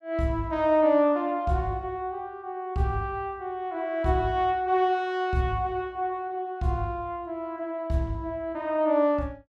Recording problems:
none

